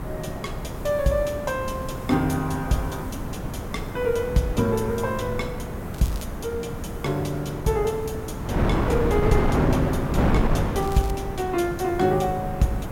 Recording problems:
background hiss; SNR 24 dB
wind on the microphone; below 470 Hz, SNR 2 dB
crackle; at 6 s and at 11 s; loose cable, SNR 18 dB

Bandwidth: 16.5 kHz